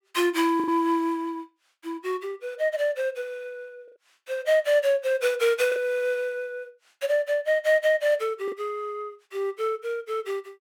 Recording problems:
packet loss; 1.8% of the sound replaced, filled with the last packet

